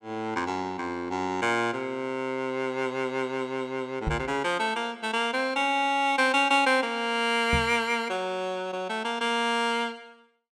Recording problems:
microphone thump; at 4 s and at 7.5 s; peak +2 dB vs average level

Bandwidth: 16.5 kHz